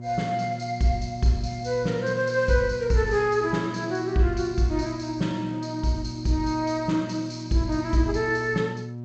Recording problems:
lossy codec; G.722, log-spectral distance 2 dB
hum; 60 Hz, harmonics up to 720 Hz, SNR 11 dB

